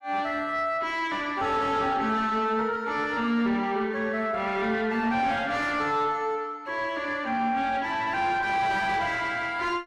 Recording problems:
distortion; soft clipping, signal-to-distortion ratio 10 dB

